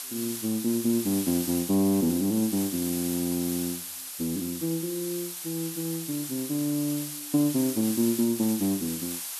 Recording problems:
hiss; slope +3 dB per octave, SNR 6 dB

